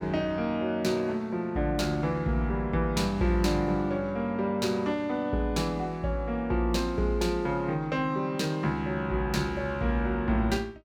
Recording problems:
none

